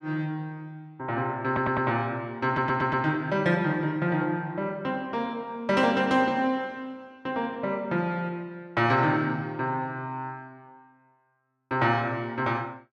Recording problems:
stutter; at 1.5 s and at 2.5 s

